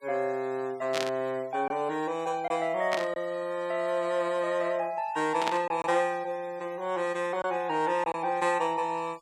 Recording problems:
noise reduction artefacts; signal-to-artefact ratio 25 dB
packet loss; 1.7% of the sound replaced, filled with silence
static burst; at 1 s, at 3 s and at 5.5 s; peak +2 dB vs average level

